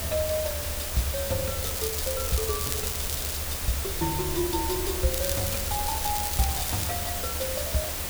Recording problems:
background hiss; slope -2 dB per octave, SNR -1 dB
rumble; below 80 Hz, strongest tone 72 Hz, SNR 6 dB
crackling; from 1.5 to 3.5 s and from 5 to 7 s; loose cable, SNR 2 dB

